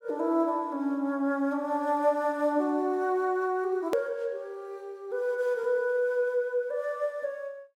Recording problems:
click at an edit; at 4 s

